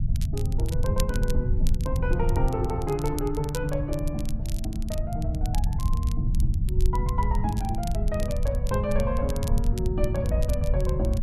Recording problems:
rumble; below 98 Hz, SNR -3 dB
crackling; vinyl, SNR 13 dB

